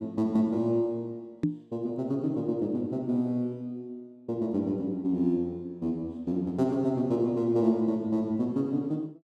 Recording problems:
knock on the microphone; at 1.5 s; peak +6 dB vs average level

